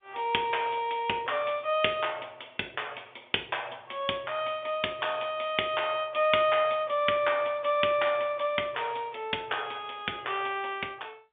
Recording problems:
telephone audio; 240 Hz to 3.6 kHz, G.711

